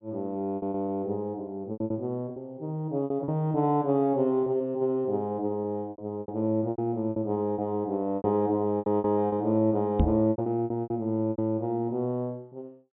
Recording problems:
treble cut off; nothing above 4 kHz
packet loss; 12% of the sound replaced, filled with repeated pitch periods
knock on the microphone; at 10 s; peak +8 dB vs average level

